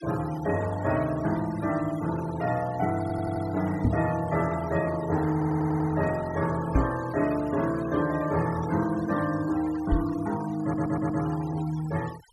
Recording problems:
noise reduction artefacts; signal-to-artefact ratio 17 dB
audio stuttering; at 3 s, at 5.5 s and at 11 s
microphone thump; at 4 s, at 7 s and at 10 s; peak +7 dB vs average level

